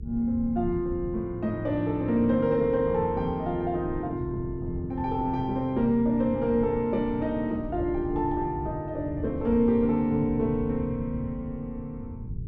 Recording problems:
hum; 50 Hz, harmonics up to 450 Hz, SNR 24 dB
rumble; below 140 Hz, SNR 12 dB

